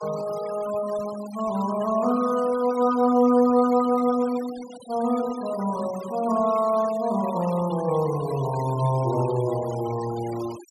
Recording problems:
noise reduction artefacts; signal-to-artefact ratio 18 dB

